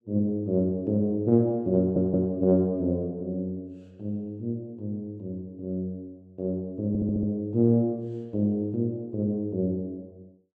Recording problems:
audio stuttering; at 2 s and at 7 s

